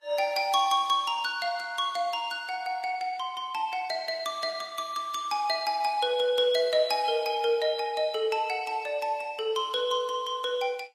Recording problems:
lossy codec; Vorbis, log-spectral distance 3 dB, nothing above 13.8 kHz

